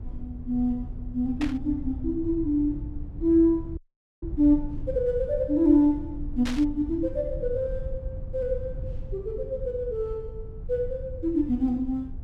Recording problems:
rumble; below 88 Hz, SNR 12 dB
static burst; at 1.5 s and at 6.5 s; peak -5 dB vs average level
audio freezing; at 4 s

